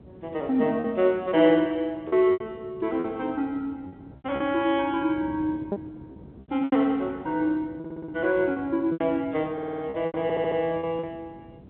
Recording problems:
telephone audio; 240 Hz to 3.8 kHz, G.711
wind on the microphone; below 450 Hz, SNR 19 dB
packet loss; 8% of the sound replaced, filled with repeated pitch periods
audio stuttering; at 8 s, at 9.5 s and at 10 s

